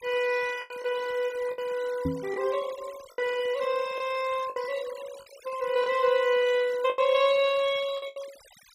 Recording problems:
noise reduction artefacts; signal-to-artefact ratio 19 dB
packet loss; 7% of the sound replaced, filled with the last packet
knock on the microphone; at 2 s; peak +1 dB vs average level

